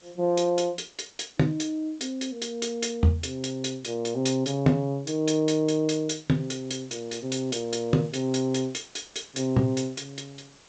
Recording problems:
lossy compression; G.722, then G.722, log-spectral distance 8 dB, nothing above 7.6 kHz
background hiss; slope -2 dB per octave, SNR 27 dB

